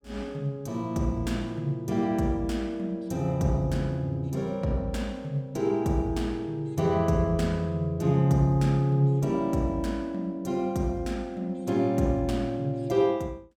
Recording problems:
none

